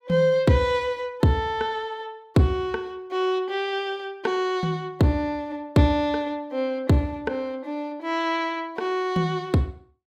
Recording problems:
none

